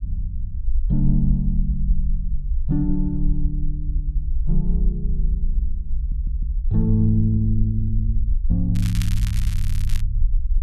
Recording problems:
rumble; below 52 Hz, strongest tone 22 Hz, SNR 1 dB
audio stuttering; at 6 s and at 9.5 s
crackling; from 9 to 10 s; loose cable, SNR 13 dB

